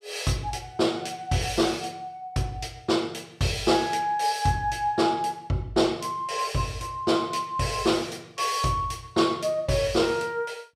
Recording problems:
none

